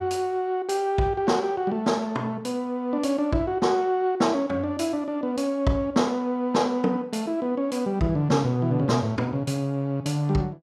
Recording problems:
none

